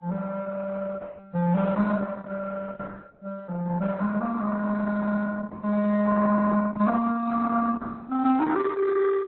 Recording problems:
codec artefacts; Opus, then AAC, log-spectral distance 4 dB, nothing above 4 kHz

